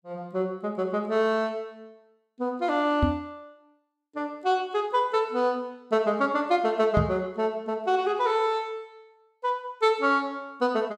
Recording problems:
knock on the microphone; at 3 s and at 7 s; peak +6 dB vs average level

